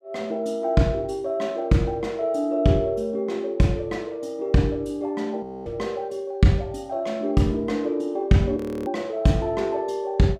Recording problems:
frozen audio; at 5.5 s and at 8.5 s

